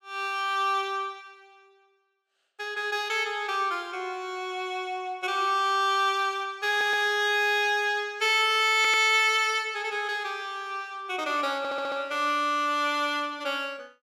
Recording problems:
audio stuttering; at 6.5 s, at 9 s and at 12 s

